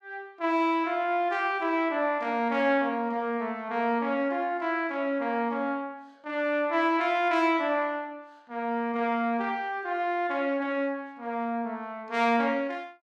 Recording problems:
none

